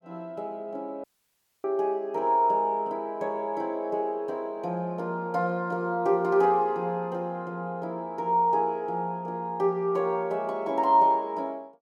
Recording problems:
dropout; at 1 s for 0.5 s

